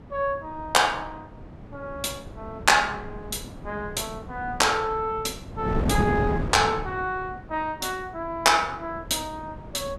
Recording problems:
wind on the microphone; below 340 Hz, SNR 9 dB

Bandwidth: 14.5 kHz